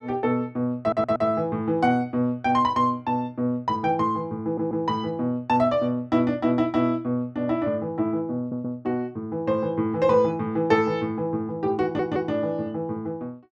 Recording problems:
audio stuttering; 4 times, first at 1 s

